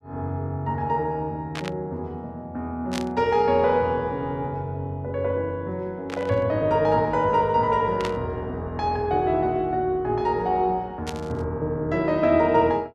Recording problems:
burst of static; 5 times, first at 1.5 s; peak -4 dB vs average level

